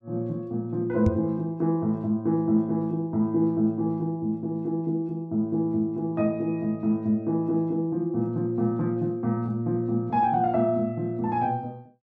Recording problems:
microphone bump; at 1 s; peak +5 dB vs average level

